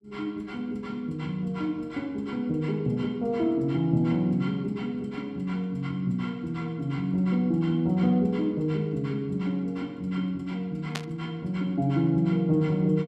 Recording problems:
static burst; at 11 s; peak -1 dB vs average level

